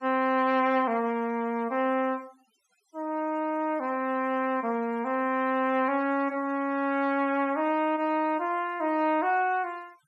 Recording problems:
denoising artefacts; signal-to-artefact ratio 26 dB

